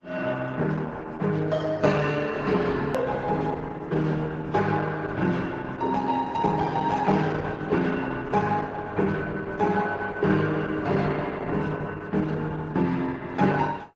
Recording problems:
lossy codec; Vorbis, then Opus, log-spectral distance 3 dB, nothing above 13.3 kHz
edit click; at 3 s

